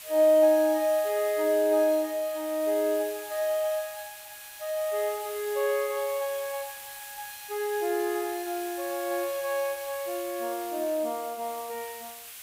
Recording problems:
hiss; SNR 13 dB

